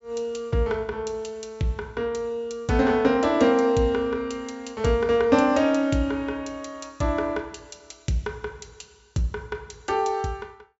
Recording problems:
treble cut off; nothing above 8 kHz

